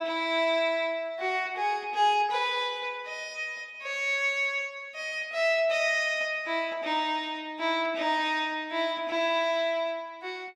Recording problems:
none

